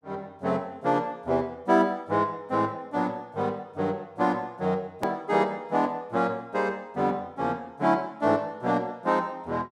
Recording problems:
click at an edit; at 5 s

